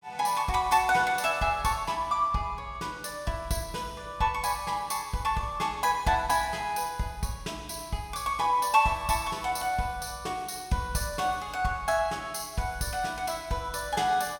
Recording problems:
none

